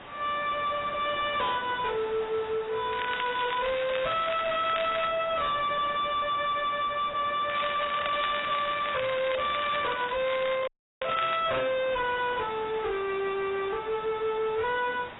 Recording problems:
lossy compression; AAC, log-spectral distance 9 dB, nothing above 3.3 kHz
distortion; hard clipping, signal-to-distortion ratio 7 dB
background hiss; SNR 15 dB
crackle; from 3 to 5 s and from 7.5 to 11 s; loose cable, SNR 9 dB
dropout; at 11 s

